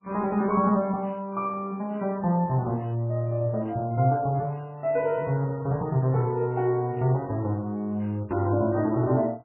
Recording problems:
lossy compression; MP3, log-spectral distance 2 dB
microphone handling noise; from 5 to 7.5 s; peak -13 dB vs average level

